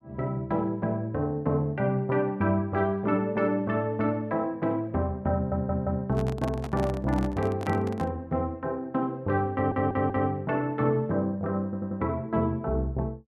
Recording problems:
stutter; at 5.5 s, at 9.5 s and at 12 s
microphone handling noise; from 6 to 8 s; peak -3 dB vs average level

